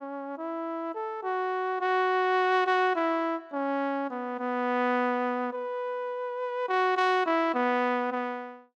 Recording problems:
none

